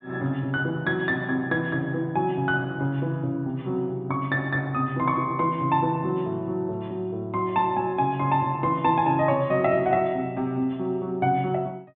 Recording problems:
treble missing; nothing above 4 kHz

